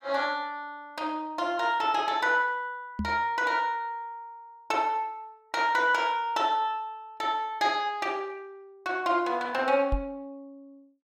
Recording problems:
microphone bump; at 3 s and at 10 s; peak +1 dB vs average level

